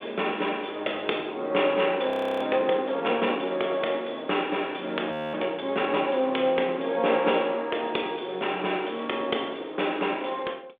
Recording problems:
telephone audio; 280 Hz to 3.6 kHz, G.726
audio freezing; at 2 s and at 5 s

